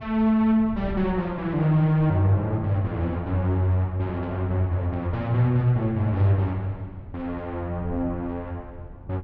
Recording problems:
wind on the microphone; below 130 Hz, SNR 18 dB

